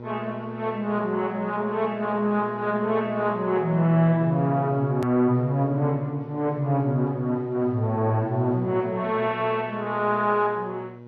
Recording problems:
lossy codec; MP2, log-spectral distance 2 dB, nothing above 13.1 kHz
hum; 60 Hz, harmonics up to 1.1 kHz, SNR 15 dB
edit click; at 5 s

